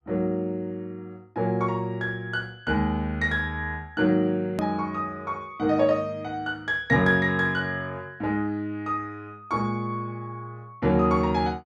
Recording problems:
hard cut with a click; at 4.5 s

